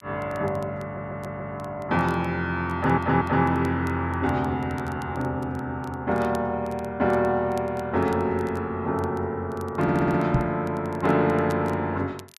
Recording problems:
crackle; vinyl, SNR 28 dB
stutter; at 1 s, at 2.5 s and at 10 s
microphone thump; at 10 s; peak +5 dB vs average level

